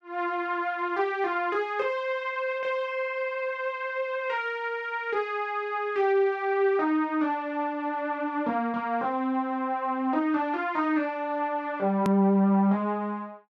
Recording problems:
edit click; at 12 s

